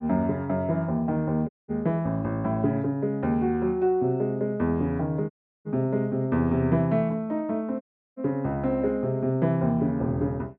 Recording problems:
dropout; at 1.5 s, at 5.5 s and at 8 s

